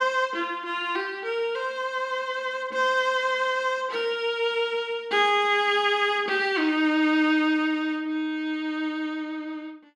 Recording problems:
none

